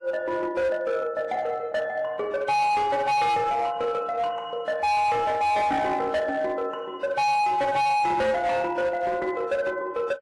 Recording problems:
lossy codec; AAC, log-spectral distance 2 dB, nothing above 11 kHz
distortion; hard clipping, signal-to-distortion ratio 8 dB

